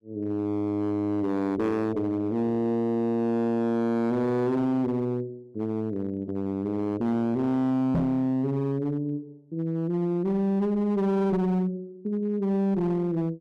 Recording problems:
distorted audio; hard clipping, signal-to-distortion ratio 9 dB
microphone thump; at 8 s; peak +5 dB vs average level

